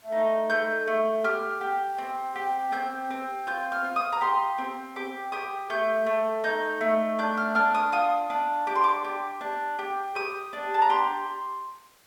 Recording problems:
background hiss; slope -1 dB per octave, SNR 29 dB

